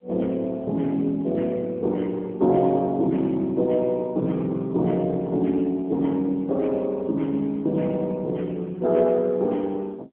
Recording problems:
telephone audio; 170 Hz to 2.4 kHz, AMR-NB

